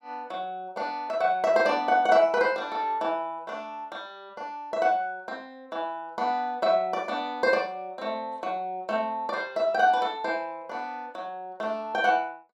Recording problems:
none

